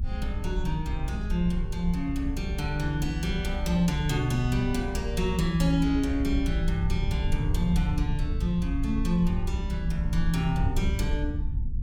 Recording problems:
rumble; below 70 Hz, SNR 3 dB

